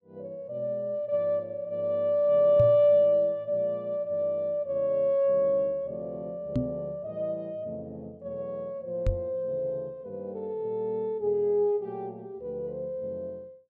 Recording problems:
microphone bump; at 2.5 s, at 6.5 s and at 9 s; peak +3 dB vs average level

